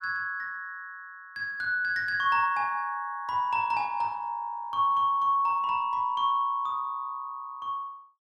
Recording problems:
none

